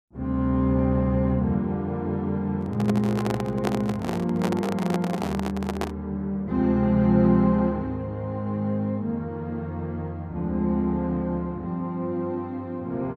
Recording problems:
microphone handling noise; from 2.5 to 6 s; peak +2 dB vs average level

